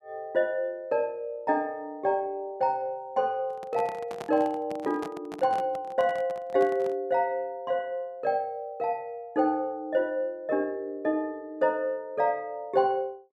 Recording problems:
handling noise; from 3.5 to 7 s; peak -6 dB vs average level

